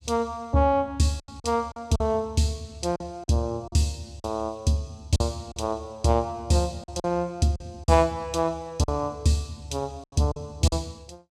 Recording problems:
lost packets; 7% of the sound replaced, filled with silence

